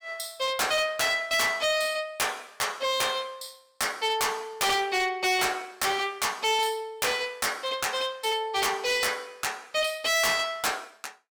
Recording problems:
distortion; hard clipping, uneven, signal-to-distortion ratio 7 dB

